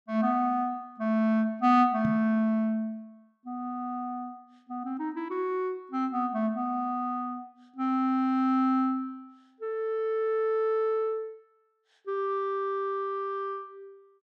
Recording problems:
knock on the microphone; at 2 s; peak -1 dB vs average level

